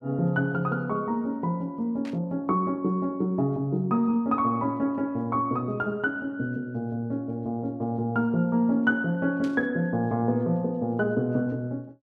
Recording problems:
static burst; at 2 s and at 9.5 s; peak -13 dB vs average level

